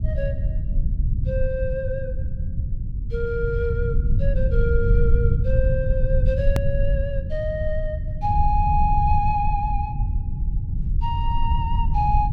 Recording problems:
low-frequency rumble; below 88 Hz, SNR -2 dB
edit click; at 6.5 s

